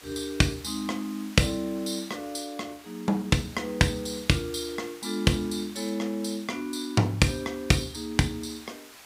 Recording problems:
background hiss; slope 0 dB per octave, SNR 19 dB

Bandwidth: 15.5 kHz